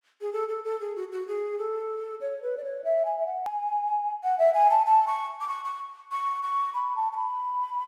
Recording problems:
hard cut with a click; at 3.5 s

